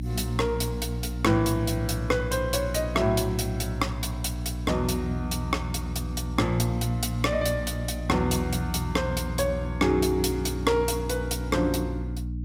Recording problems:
hum; 60 Hz, harmonics up to 300 Hz, SNR 6 dB

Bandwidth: 16 kHz